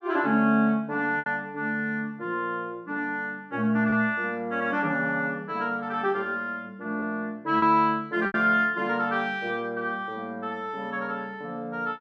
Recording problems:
packet loss; 2% of the sound replaced, filled with repeated pitch periods

